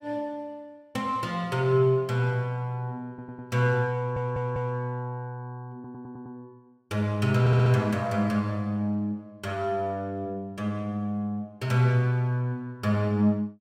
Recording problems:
stutter; 4 times, first at 3 s

